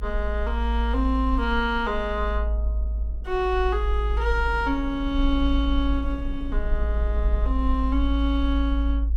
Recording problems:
low-frequency rumble; below 56 Hz, strongest tone 54 Hz, SNR 1 dB
wind noise; below 300 Hz, SNR 18 dB

